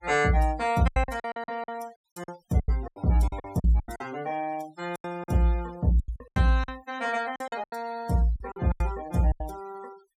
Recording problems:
noise reduction artefacts; signal-to-artefact ratio 19 dB
packet loss; 15% of the sound replaced, filled with silence

